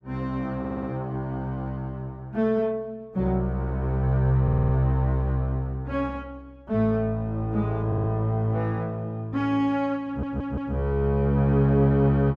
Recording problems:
audio stuttering; 4 times, first at 0.5 s

